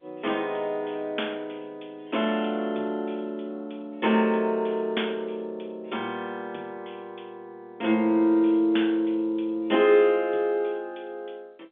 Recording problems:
telephone audio; 240 Hz to 3.5 kHz, G.711

